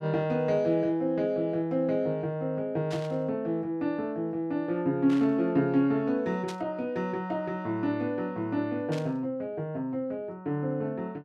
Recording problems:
burst of static; 4 times, first at 3 s; peak -8 dB vs average level

